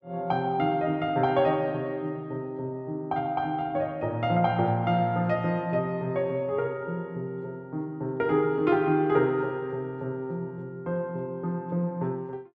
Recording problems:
none

